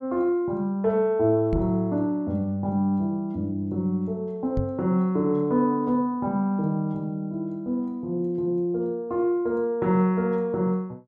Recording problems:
microphone thump; at 1.5 s and at 4.5 s; peak +1 dB vs average level

